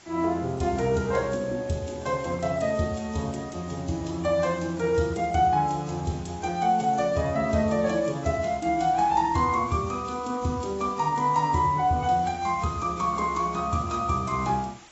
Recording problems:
lossy codec; AAC, log-spectral distance 6 dB, nothing above 7.8 kHz
background hiss; slope -1 dB per octave, SNR 24 dB

